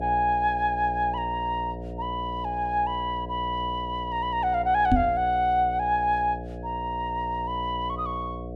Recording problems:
electrical hum; 60 Hz, harmonics up to 720 Hz, SNR 10 dB
microphone bump; at 5 s; peak +8 dB vs average level

